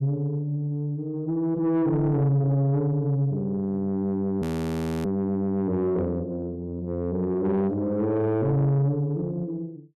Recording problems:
distorted audio; soft clipping, signal-to-distortion ratio 11 dB
audio freezing; at 4.5 s for 0.5 s

